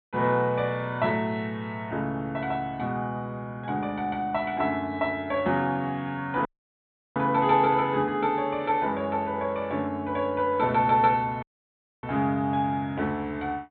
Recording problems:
treble cut off; nothing above 4 kHz
audio cutting out; at 6.5 s for 0.5 s and at 11 s for 0.5 s

